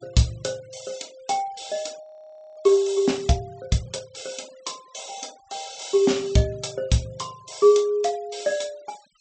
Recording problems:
treble cut off; nothing above 8 kHz
denoising artefacts; signal-to-artefact ratio 25 dB
audio freezing; at 2 s for 0.5 s

